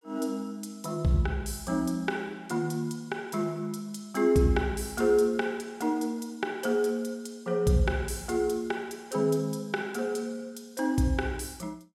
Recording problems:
none

